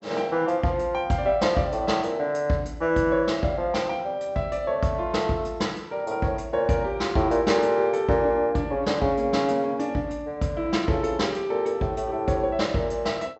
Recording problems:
treble missing; nothing above 7.8 kHz

